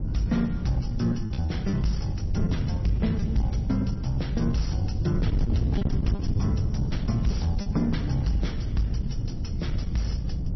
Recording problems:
codec artefacts; MP3, log-spectral distance 2 dB, nothing above 5.8 kHz
distorted audio; soft clipping, signal-to-distortion ratio 11 dB
wind noise; below 150 Hz, SNR 1 dB
lost packets; 4% of the sound replaced, filled with repeated pitch periods

